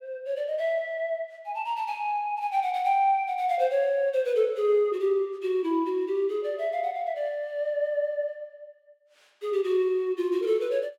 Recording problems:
none

